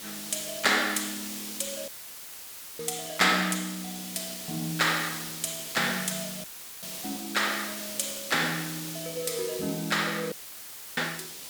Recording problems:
background hiss; SNR 7 dB
audio cutting out; at 2 s for 1 s, at 6.5 s and at 10 s for 0.5 s; filled with static

